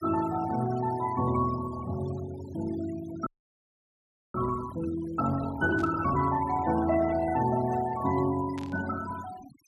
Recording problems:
denoising artefacts; signal-to-artefact ratio 16 dB
frozen audio; at 3.5 s for 1 s
burst of static; at 6 s and at 8.5 s; peak -11 dB vs average level

